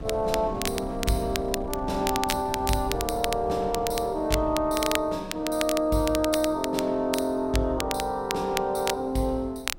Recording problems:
wind on the microphone; below 200 Hz, SNR 16 dB
crackle; vinyl, SNR 8 dB

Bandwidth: 16 kHz